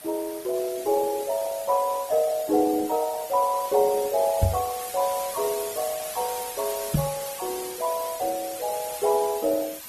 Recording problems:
lossy compression; Opus, then Opus, log-spectral distance 10 dB
hiss; slope 0 dB per octave, SNR 11 dB
microphone thump; at 4.5 s and at 7 s; peak +7 dB vs average level

